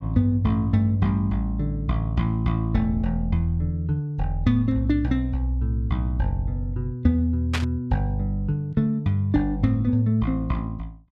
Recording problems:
static burst; at 7.5 s; peak +1 dB vs average level

